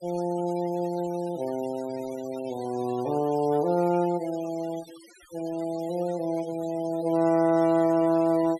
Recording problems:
noise reduction artefacts; signal-to-artefact ratio 21 dB

